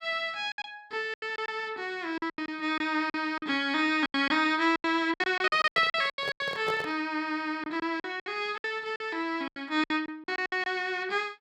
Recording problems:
packet loss; 14% of the sound replaced, filled with silence
microphone handling noise; from 5.5 to 7 s; peak -3 dB vs average level

